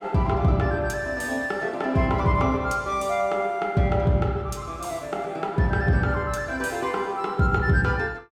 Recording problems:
none

